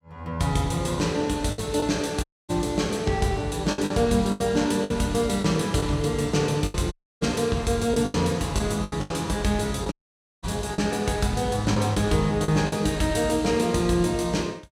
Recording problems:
packet loss; 7% of the sound replaced, filled with the last packet
dropout; at 2 s, at 7 s and at 10 s for 0.5 s

